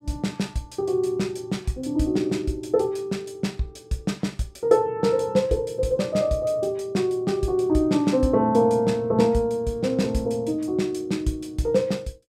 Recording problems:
none

